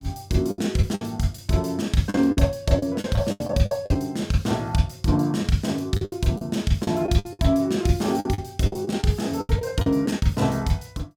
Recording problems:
lost packets; 11% of the sound replaced, filled with the last packet

